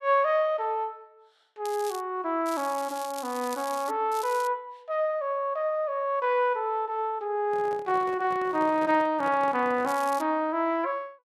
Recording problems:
crackle; 4 times, first at 1.5 s; loose cable, SNR 17 dB
handling noise; from 7.5 to 10 s; peak -8 dB vs average level

